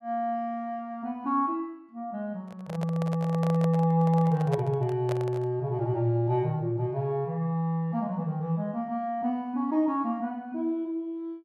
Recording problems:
microphone handling noise; from 2.5 to 5.5 s; peak -2 dB vs average level

